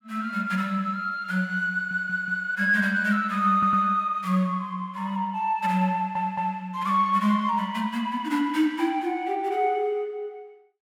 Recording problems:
audio stuttering; at 1.5 s, at 3.5 s and at 6 s

